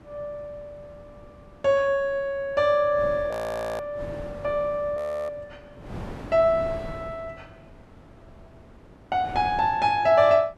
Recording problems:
wind on the microphone; below 570 Hz, SNR 18 dB
frozen audio; at 3.5 s and at 5 s

